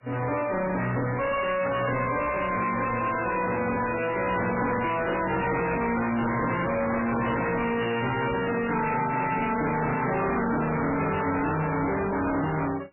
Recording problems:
codec artefacts; AAC, then MP3, log-spectral distance 7 dB, nothing above 2.8 kHz
distorted audio; hard clipping, signal-to-distortion ratio 5 dB

